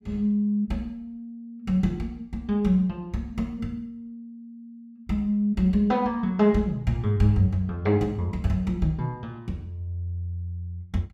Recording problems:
none

